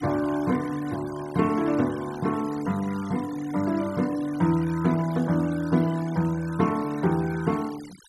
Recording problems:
denoising artefacts; signal-to-artefact ratio 19 dB

